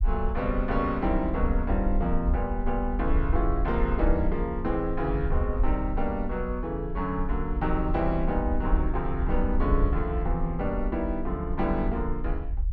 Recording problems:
low-frequency rumble; below 60 Hz, SNR 2 dB

